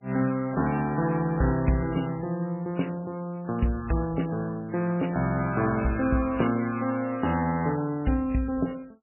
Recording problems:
lossy compression; MP3, log-spectral distance 3 dB, nothing above 2.8 kHz

